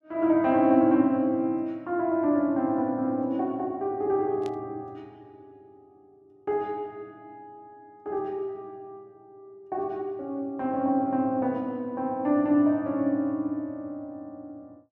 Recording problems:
static burst; at 4.5 s; peak -15 dB vs average level

